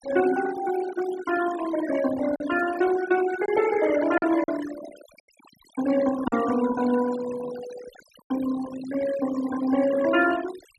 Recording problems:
noise reduction artefacts; signal-to-artefact ratio 12 dB
lost packets; 2% of the sound replaced, filled with silence

